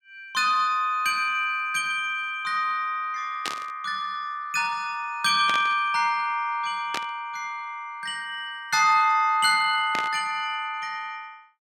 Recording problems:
static burst; 4 times, first at 3.5 s; peak -2 dB vs average level

